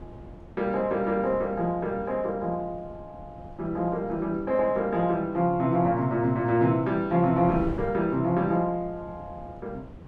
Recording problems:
wind on the microphone; below 300 Hz, SNR 18 dB

